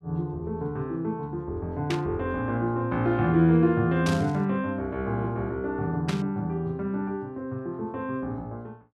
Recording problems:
static burst; at 2 s, at 4 s and at 6 s; peak -1 dB vs average level

